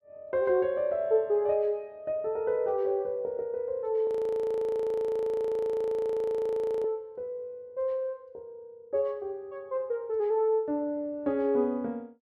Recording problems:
frozen audio; at 4 s for 3 s

